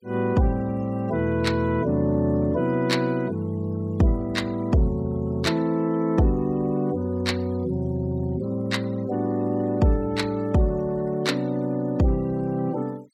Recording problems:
denoising artefacts; signal-to-artefact ratio 26 dB

